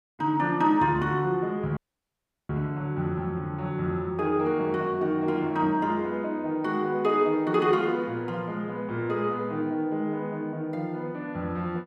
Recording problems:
audio cutting out; at 2 s for 0.5 s

